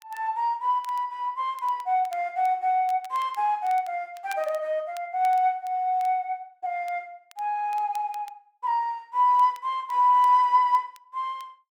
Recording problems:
crackle; vinyl, SNR 28 dB

